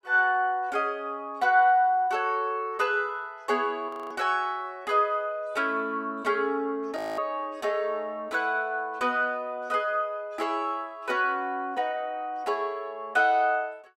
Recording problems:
audio freezing; at 4 s and at 7 s

